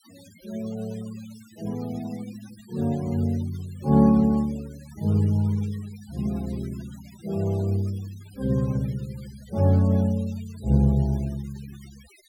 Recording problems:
denoising artefacts; signal-to-artefact ratio 24 dB

